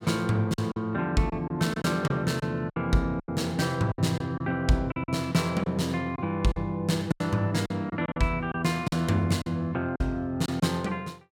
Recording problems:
packet loss; 9% of the sound replaced, filled with silence

